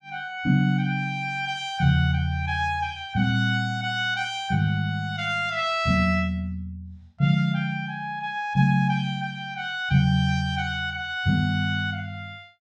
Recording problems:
none

